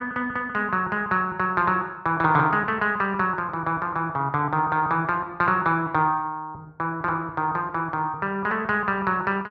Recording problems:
none

